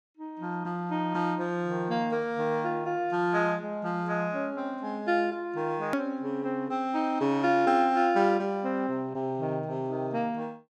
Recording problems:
hard cut with a click; at 6 s

